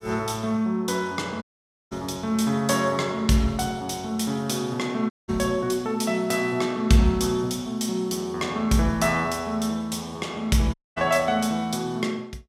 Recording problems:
audio cutting out; at 1.5 s, at 5 s and at 11 s

